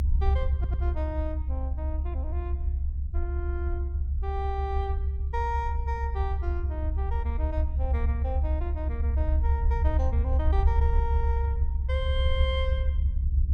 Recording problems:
rumble; below 70 Hz, strongest tone 68 Hz, SNR -8 dB
stutter; at 0.5 s

